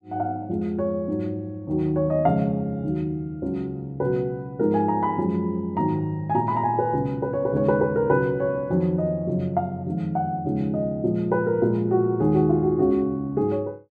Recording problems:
none

